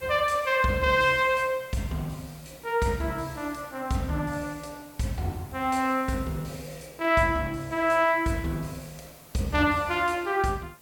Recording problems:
hiss; slope -3 dB per octave, SNR 23 dB

